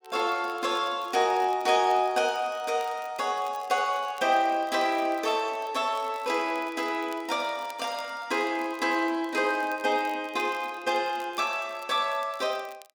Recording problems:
crackling; vinyl, SNR 25 dB

